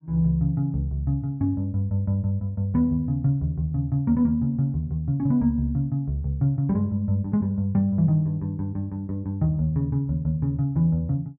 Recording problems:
none

